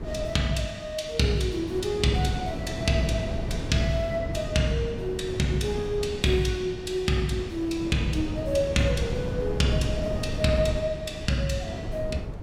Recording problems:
wind on the microphone; below 290 Hz, SNR 7 dB

